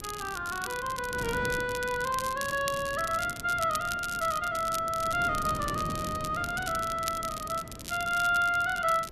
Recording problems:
wind noise; below 390 Hz, SNR 13 dB
crackle; vinyl, SNR 11 dB

